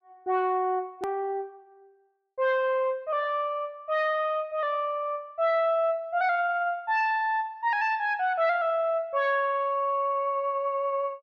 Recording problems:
click at an edit; at 1 s

